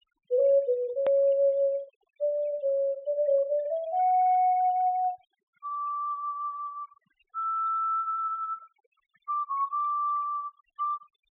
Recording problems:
treble cut off; nothing above 4 kHz
noise reduction artefacts; signal-to-artefact ratio 25 dB
edit click; at 1 s

